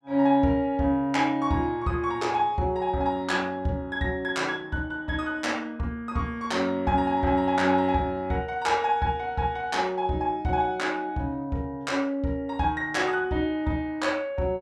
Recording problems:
none

